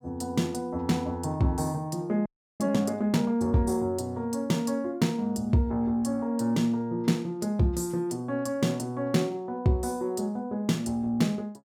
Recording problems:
frozen audio; at 2.5 s

